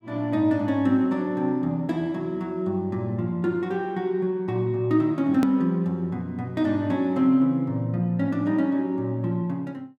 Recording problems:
hard cut with a click; at 5.5 s

